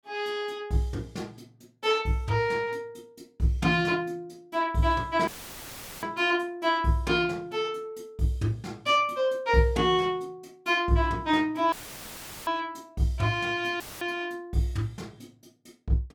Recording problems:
dropout; at 5.5 s for 1 s, at 12 s for 1 s and at 14 s; filled with static

